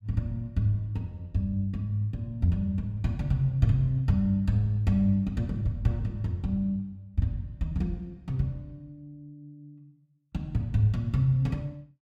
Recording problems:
none

